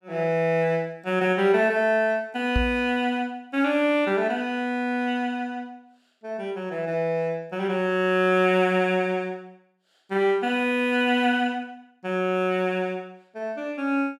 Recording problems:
microphone thump; at 2.5 s; peak +2 dB vs average level

